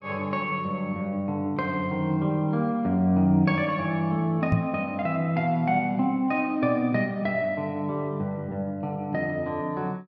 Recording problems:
knock on the microphone; at 4.5 s; peak +7 dB vs average level

